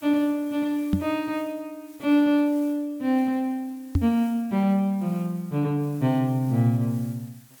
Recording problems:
hiss; SNR 26 dB
microphone thump; at 1 s and at 4 s; peak +5 dB vs average level

